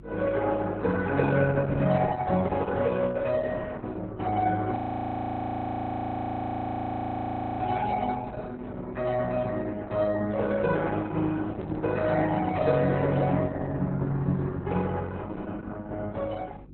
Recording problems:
lossy compression; Vorbis, then Opus, log-spectral distance 3 dB, nothing above 13.1 kHz
electrical hum; 50 Hz, harmonics up to 350 Hz, SNR 20 dB
audio freezing; at 5 s for 3 s
microphone handling noise; from 11 to 13 s; peak -10 dB vs average level

